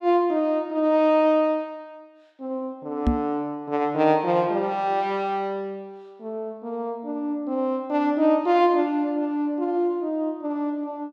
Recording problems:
microphone bump; at 3 s; peak +6 dB vs average level

